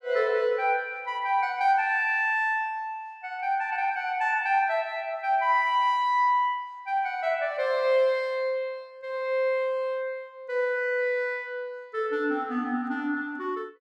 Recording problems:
none

